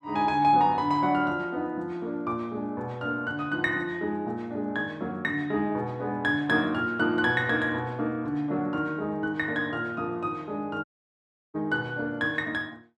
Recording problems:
dropout; at 11 s for 0.5 s

